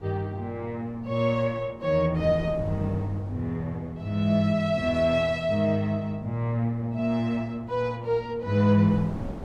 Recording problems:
wind on the microphone; below 420 Hz, SNR 17 dB

